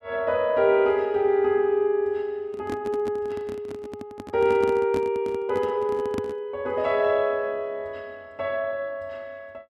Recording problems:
microphone handling noise; from 2.5 to 6.5 s; peak -2 dB vs average level

